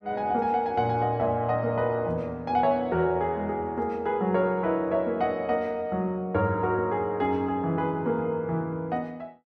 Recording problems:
none

